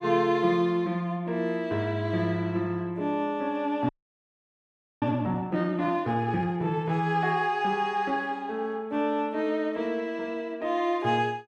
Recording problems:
audio freezing; at 4 s for 1 s

